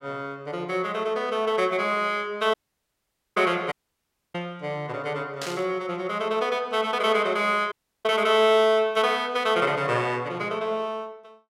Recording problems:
audio cutting out; at 2.5 s for 1 s, at 3.5 s for 0.5 s and at 7.5 s
burst of static; at 5.5 s; peak -5 dB vs average level

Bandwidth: 16 kHz